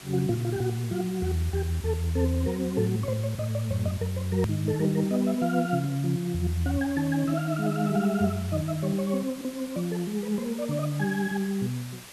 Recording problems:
hiss; slope -1 dB per octave, SNR 16 dB
click at an edit; at 4.5 s

